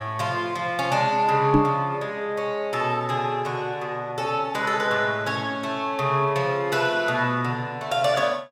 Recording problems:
microphone bump; at 1.5 s; peak +6 dB vs average level

